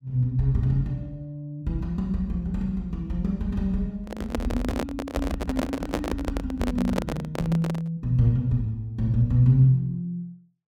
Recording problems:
handling noise; from 4 to 8 s; peak +3 dB vs average level

